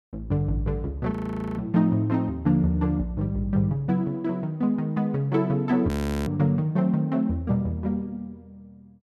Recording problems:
audio freezing; at 1 s and at 6 s

